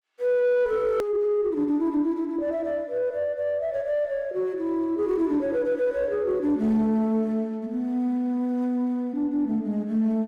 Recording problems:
distorted audio; soft clipping, signal-to-distortion ratio 11 dB
edit click; at 1 s

